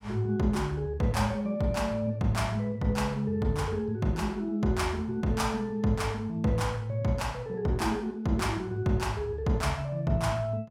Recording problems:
none

